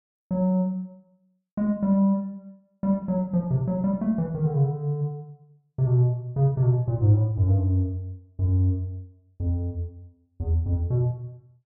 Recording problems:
none

